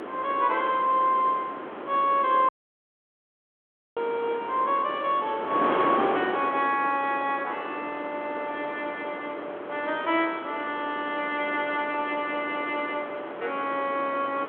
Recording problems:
phone line; 260 Hz to 3.5 kHz, G.726
wind noise; below 1.2 kHz, SNR 8 dB
dropout; at 2.5 s for 1.5 s

